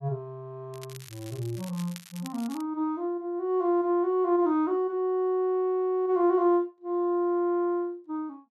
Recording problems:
crackle; from 0.5 to 2.5 s; loose cable, SNR 20 dB

